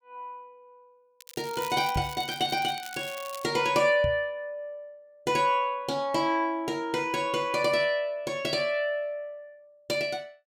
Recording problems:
crackling; from 1 to 3.5 s; loose cable, SNR 16 dB
microphone bump; at 2 s and at 4 s; peak 0 dB vs average level

